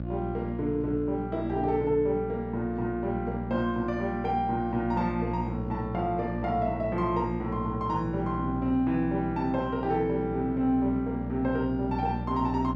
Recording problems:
hum; 60 Hz, harmonics up to 660 Hz, SNR 7 dB

